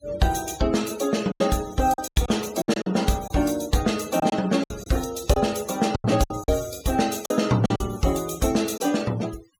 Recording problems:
denoising artefacts; signal-to-artefact ratio 16 dB
lost packets; 9% of the sound replaced, filled with silence

